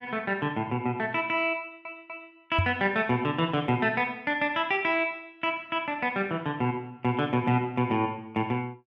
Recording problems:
stutter; at 1.5 s
microphone bump; at 2.5 s; peak +4 dB vs average level

